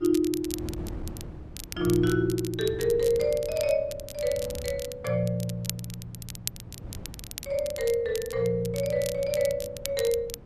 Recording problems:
wind on the microphone; below 220 Hz, SNR 16 dB
crackle; vinyl, SNR 12 dB

